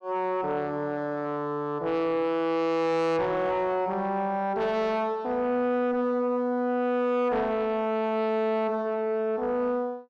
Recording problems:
distortion; soft clipping, signal-to-distortion ratio 8 dB

